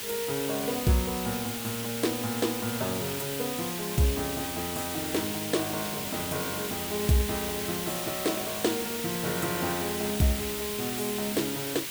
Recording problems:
hiss; SNR 2 dB

